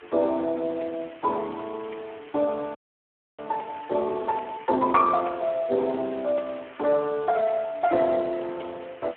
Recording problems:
telephone audio; 300 Hz to 2.3 kHz, Speex
background hiss; SNR 21 dB
audio freezing; at 3 s for 0.5 s

